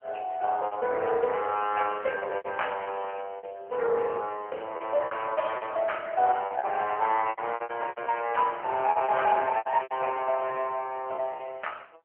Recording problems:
phone line; 340 Hz to 3.1 kHz, AMR-NB
packet loss; 13% of the sound replaced, filled with repeated pitch periods
crackling; from 1.5 to 3 s; loose cable, SNR 27 dB

